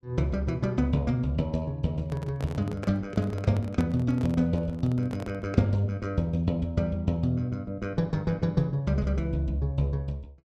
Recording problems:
handling noise; from 2 to 5.5 s; peak -4 dB vs average level

